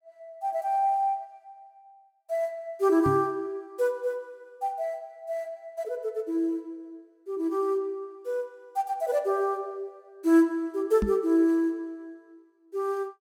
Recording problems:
knock on the microphone; at 3 s and at 11 s; peak +3 dB vs average level

